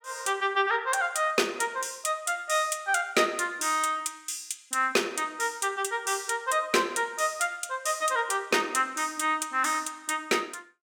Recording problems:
none

